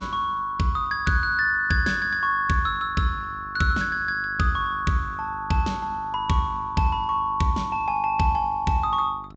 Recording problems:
treble cut off; nothing above 8 kHz
electrical hum; 50 Hz, harmonics up to 1.1 kHz, SNR 22 dB

